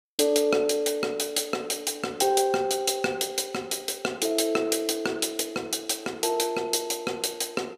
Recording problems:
none

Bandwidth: 15 kHz